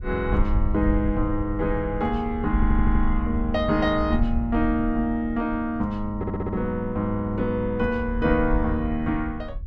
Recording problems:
wind on the microphone; below 68 Hz, SNR 6 dB
audio stuttering; at 2.5 s and at 6 s

